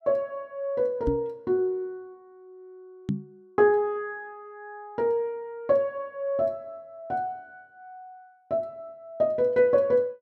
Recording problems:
microphone bump; at 1 s and at 3 s; peak +3 dB vs average level

